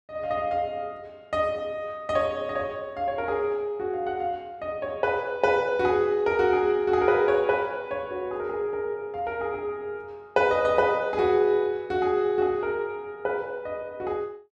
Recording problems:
none

